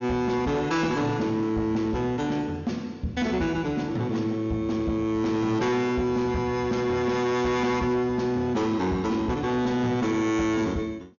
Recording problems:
treble cut off; nothing above 6.8 kHz
distorted audio; soft clipping, signal-to-distortion ratio 10 dB

